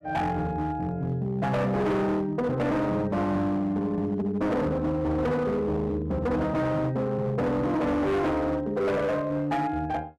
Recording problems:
distorted audio; hard clipping, signal-to-distortion ratio 8 dB

